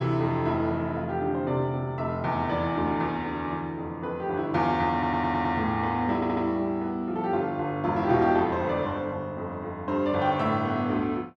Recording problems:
stutter; at 5 s and at 6 s

